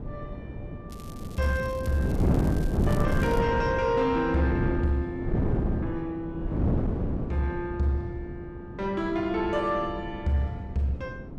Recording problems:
distortion; soft clipping, signal-to-distortion ratio 12 dB
wind noise; below 290 Hz, SNR 2 dB
crackle; from 1 to 3.5 s; loose cable, SNR 21 dB

